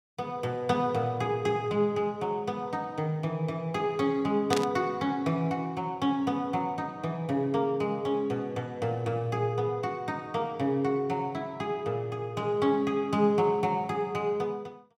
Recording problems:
burst of static; at 4.5 s; peak +2 dB vs average level

